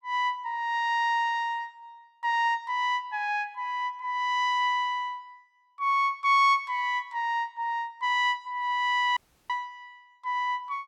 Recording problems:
audio cutting out; at 9 s

